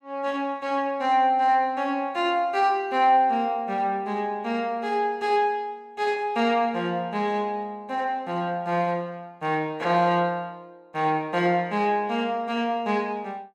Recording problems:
none

